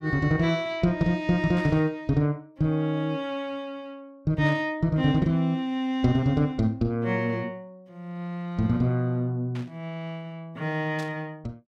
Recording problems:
burst of static; 4 times, first at 1.5 s; peak -12 dB vs average level

